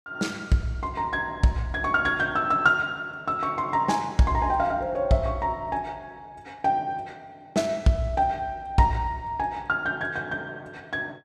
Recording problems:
none

